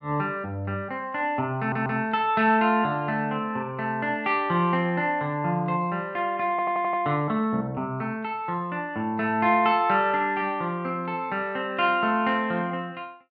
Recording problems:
stutter; at 1.5 s and at 6.5 s

